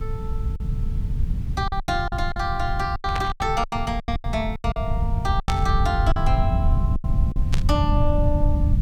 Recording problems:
background hiss; slope -4 dB per octave, SNR 26 dB
rumble; below 100 Hz, SNR -1 dB
packet loss; 13% of the sound replaced, filled with silence
burst of static; at 3 s, at 5.5 s and at 7.5 s; peak +1 dB vs average level

